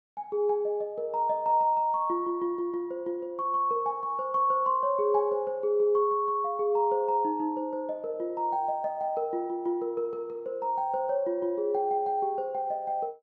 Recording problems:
none

